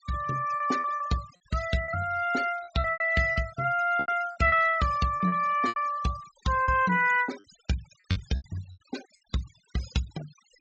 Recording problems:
treble missing; nothing above 8 kHz
noise reduction artefacts; signal-to-artefact ratio 17 dB
lost packets; 11% of the sound replaced, filled with repeated pitch periods

